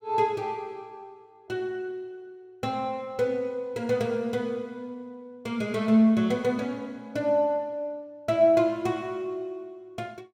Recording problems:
none

